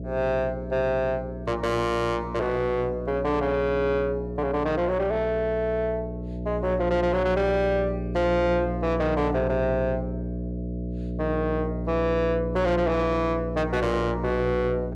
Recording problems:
distorted audio; soft clipping, signal-to-distortion ratio 8 dB
hum; 60 Hz, harmonics up to 660 Hz, SNR 7 dB

